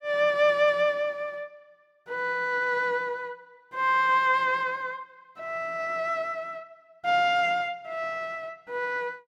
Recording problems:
none

